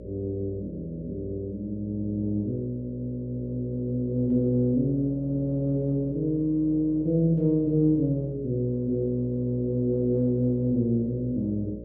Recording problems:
electrical hum; 60 Hz, harmonics up to 600 Hz, SNR 15 dB

